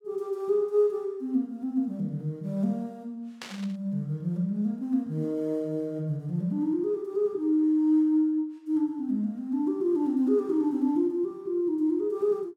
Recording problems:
static burst; at 3.5 s; peak -7 dB vs average level

